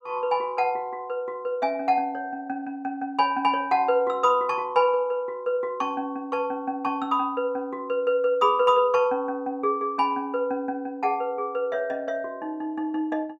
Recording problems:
none

